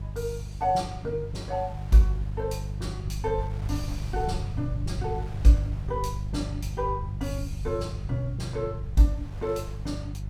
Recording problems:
mains hum; 50 Hz, harmonics up to 350 Hz, SNR 6 dB
low-frequency rumble; below 100 Hz, SNR 11 dB
wind on the microphone; below 2.1 kHz, SNR 23 dB

